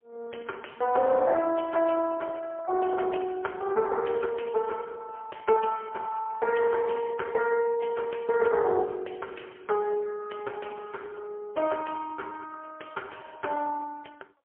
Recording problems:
phone line; 320 Hz to 2.7 kHz, AMR-NB, then MP3

